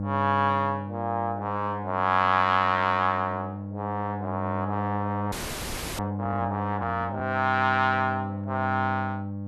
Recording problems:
electrical hum; 50 Hz, harmonics up to 800 Hz, SNR 7 dB
audio freezing; at 5.5 s for 0.5 s

